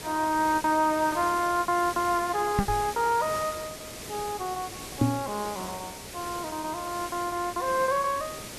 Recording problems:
background hiss; SNR 11 dB
lost packets; 16% of the sound replaced, filled with repeated pitch periods
microphone bump; at 2.5 s and at 5 s; peak +8 dB vs average level

